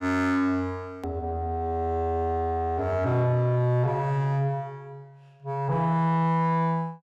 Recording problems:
distortion; soft clipping, signal-to-distortion ratio 11 dB
click at an edit; at 1 s

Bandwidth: 15 kHz